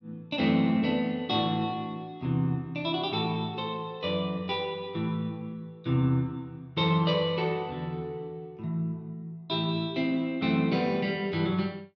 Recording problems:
none

